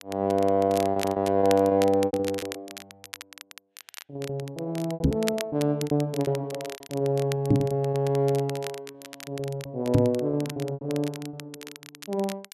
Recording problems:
crackle; vinyl, SNR 15 dB
packet loss; 18% of the sound replaced, filled with repeated pitch periods
microphone thump; at 5 s, at 7.5 s and at 10 s; peak +9 dB vs average level

